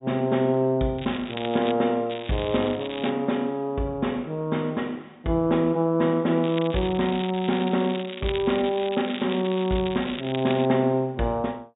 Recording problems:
treble cut off; nothing above 4 kHz
crackling; at 1 s, from 2 to 3 s and from 6.5 to 11 s; loose cable, SNR 13 dB

